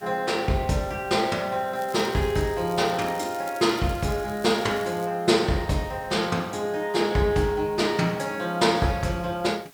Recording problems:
hiss; slope -1 dB per octave, SNR 26 dB
crackle; from 2 to 5 s; loose cable, SNR 21 dB

